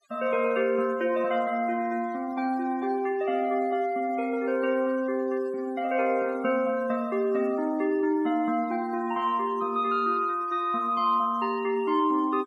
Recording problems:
noise reduction artefacts; signal-to-artefact ratio 24 dB

